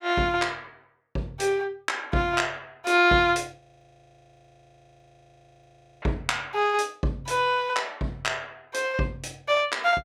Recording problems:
audio freezing; at 3.5 s for 2.5 s

